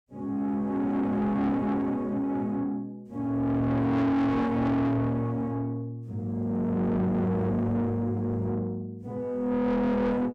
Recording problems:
distortion; soft clipping, signal-to-distortion ratio 7 dB

